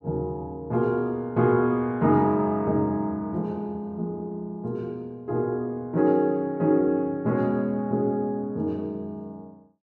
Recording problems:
none

